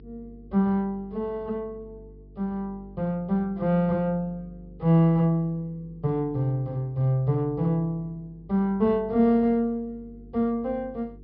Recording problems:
treble cut off; nothing above 5.3 kHz
hum; 50 Hz, harmonics up to 450 Hz, SNR 23 dB

